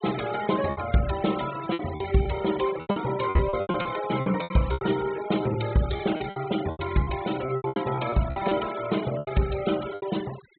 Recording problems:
low-pass filter; nothing above 4 kHz
denoising artefacts; signal-to-artefact ratio 13 dB
lost packets; 14% of the sound replaced, filled with repeated pitch periods

